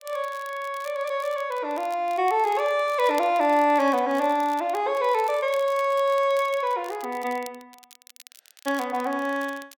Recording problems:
crackle; vinyl, SNR 22 dB

